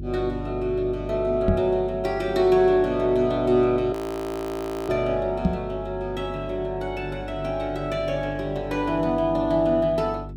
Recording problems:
hum; 50 Hz, harmonics up to 400 Hz, SNR 13 dB
microphone thump; at 1.5 s and at 5.5 s; peak +6 dB vs average level
frozen audio; at 4 s for 1 s

